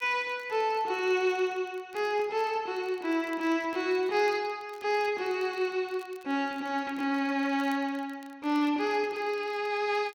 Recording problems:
crackling; vinyl, SNR 29 dB

